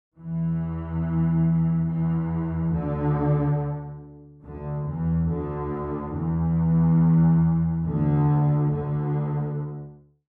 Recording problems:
none

